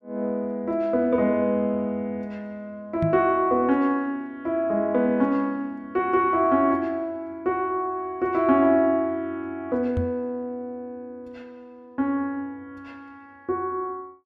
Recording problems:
microphone bump; at 3 s and at 10 s; peak +2 dB vs average level

